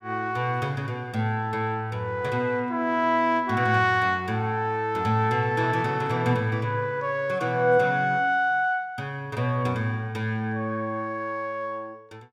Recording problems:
none

